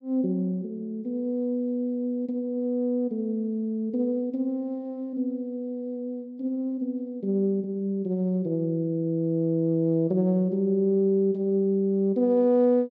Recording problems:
none

